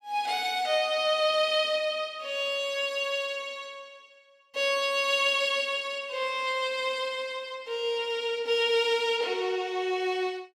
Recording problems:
none

